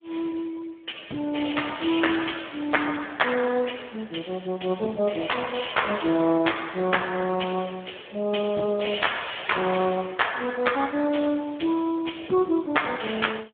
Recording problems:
phone line; 220 Hz to 3.6 kHz, Speex

